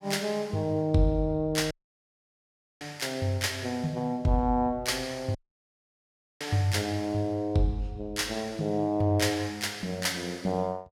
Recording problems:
audio cutting out; at 1.5 s for 1 s and at 5.5 s for 1 s

